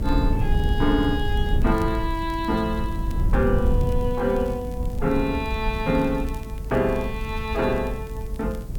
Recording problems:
background hiss; slope 0 dB per octave, SNR 26 dB
rumble; below 92 Hz, SNR 3 dB
crackle; vinyl, SNR 28 dB

